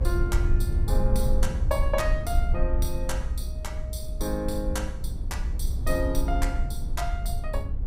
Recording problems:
rumble; below 64 Hz, SNR -3 dB

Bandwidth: 15.5 kHz